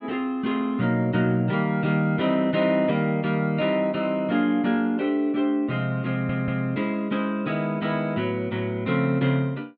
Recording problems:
stutter; at 6 s

